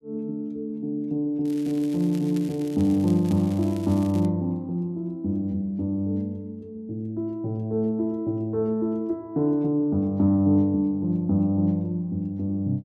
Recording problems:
crackling; from 1.5 to 4.5 s; loose cable, SNR 22 dB

